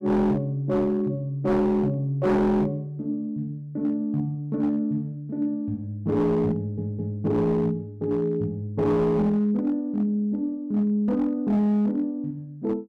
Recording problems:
distortion; hard clipping, signal-to-distortion ratio 10 dB
audio stuttering; at 6.5 s

